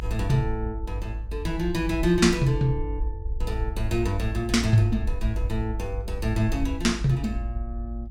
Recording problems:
low-frequency rumble; below 56 Hz, strongest tone 52 Hz, SNR 6 dB

